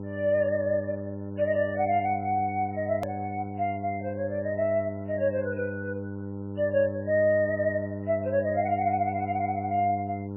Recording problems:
lossy codec; MP3, log-spectral distance 2 dB
hum; 50 Hz, harmonics up to 1 kHz, SNR 8 dB
hard cut with a click; at 3 s

